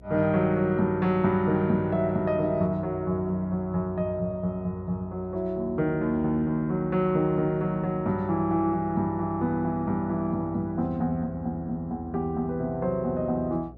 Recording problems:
hum; 60 Hz, harmonics up to 720 Hz, SNR 22 dB

